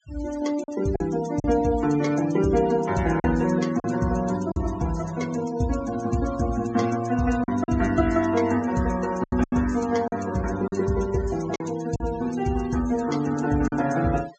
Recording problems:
low-pass filter; nothing above 8 kHz
noise reduction artefacts; signal-to-artefact ratio 17 dB
lost packets; 5% of the sound replaced, filled with silence

